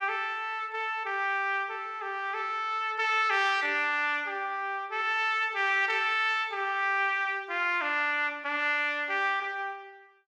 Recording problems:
none

